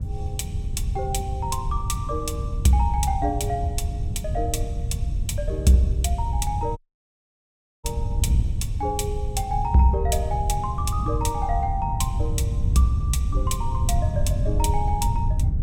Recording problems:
wind noise; below 100 Hz, SNR 1 dB
dropout; at 7 s for 1 s

